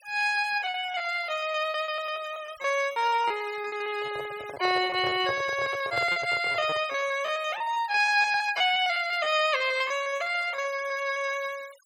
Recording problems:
denoising artefacts; signal-to-artefact ratio 19 dB
packet loss; 18% of the sound replaced, filled with repeated pitch periods
handling noise; from 4 to 7 s; peak -5 dB vs average level

